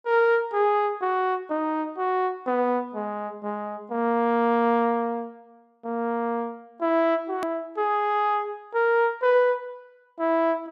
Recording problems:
edit click; at 7.5 s

